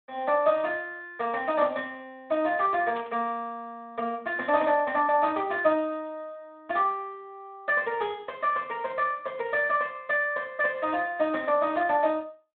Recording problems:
phone line; 320 Hz to 3.4 kHz, Speex
static burst; at 3 s; peak -12 dB vs average level

